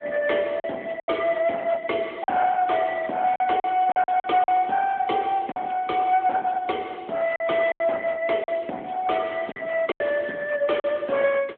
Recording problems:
telephone audio; 260 Hz to 2.8 kHz, AMR-NB
distorted audio; soft clipping, signal-to-distortion ratio 11 dB
lost packets; 7% of the sound replaced, filled with silence

